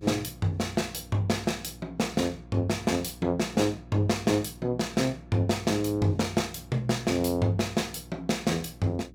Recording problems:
hum; 60 Hz, harmonics up to 360 Hz, SNR 20 dB

